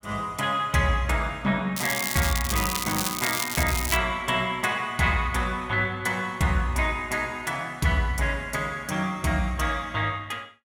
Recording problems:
crackle; from 2 to 4 s; loose cable, SNR 3 dB

